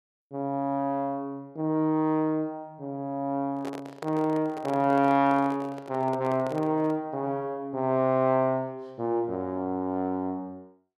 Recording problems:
microphone handling noise; from 3.5 to 7 s; peak -6 dB vs average level

